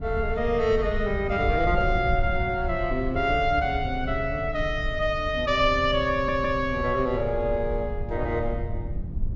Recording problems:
treble missing; nothing above 7.3 kHz
low-frequency rumble; below 86 Hz, SNR 8 dB
stutter; at 6 s

